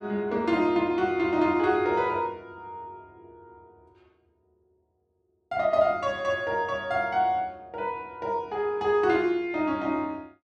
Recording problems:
none

